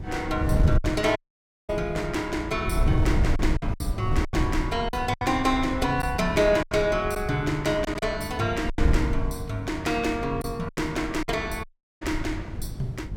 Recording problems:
electrical hum; 50 Hz, harmonics up to 550 Hz, SNR 18 dB
wind on the microphone; below 110 Hz, SNR 4 dB
lost packets; 6% of the sound replaced, filled with silence
dropout; at 1 s for 0.5 s and at 12 s

